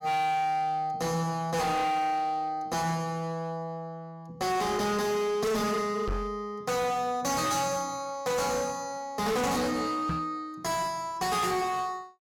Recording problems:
distortion; hard clipping, uneven, signal-to-distortion ratio 7 dB
microphone bump; at 6 s and at 10 s; peak +1 dB vs average level

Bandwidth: 17 kHz